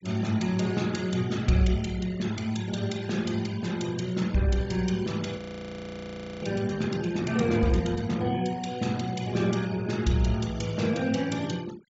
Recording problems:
low-pass filter; nothing above 8 kHz
noise reduction artefacts; signal-to-artefact ratio 20 dB
audio freezing; at 5.5 s for 1 s

